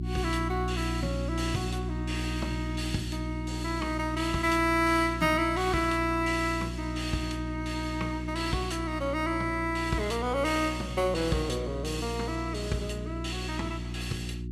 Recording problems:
hum; 60 Hz, harmonics up to 360 Hz, SNR 6 dB

